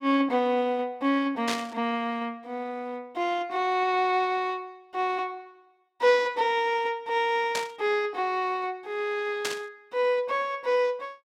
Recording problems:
static burst; at 1.5 s, at 7.5 s and at 9.5 s; peak +1 dB vs average level

